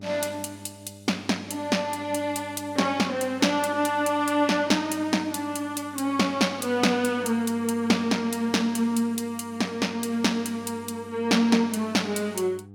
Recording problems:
hum; 50 Hz, harmonics up to 800 Hz, SNR 22 dB

